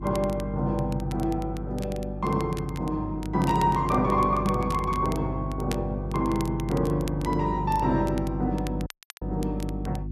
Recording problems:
mains hum; 50 Hz, harmonics up to 350 Hz, SNR 7 dB
crackling; vinyl, SNR 19 dB
dropout; at 9 s

